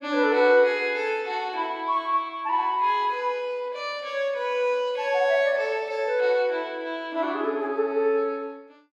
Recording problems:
none

